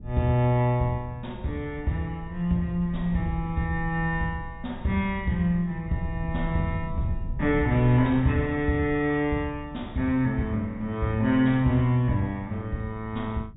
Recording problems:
treble missing; nothing above 4 kHz
low-frequency rumble; below 110 Hz, SNR 13 dB

